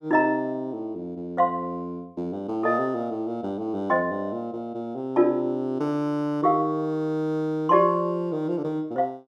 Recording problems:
none

